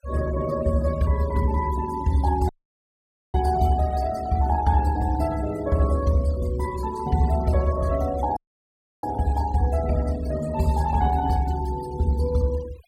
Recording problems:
denoising artefacts; signal-to-artefact ratio 19 dB
audio cutting out; at 2.5 s for 1 s and at 8.5 s for 0.5 s

